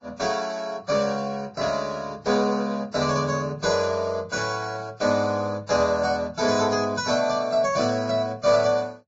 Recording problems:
lossy compression; Vorbis, log-spectral distance 3 dB, nothing above 7.3 kHz

